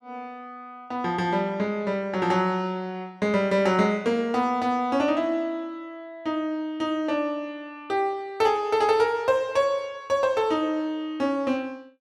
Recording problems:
none

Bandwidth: 13 kHz